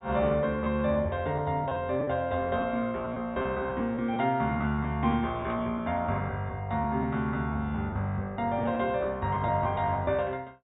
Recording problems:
treble cut off; nothing above 4 kHz
lost packets; 6% of the sound replaced, filled with repeated pitch periods
static burst; at 5.5 s; peak -13 dB vs average level

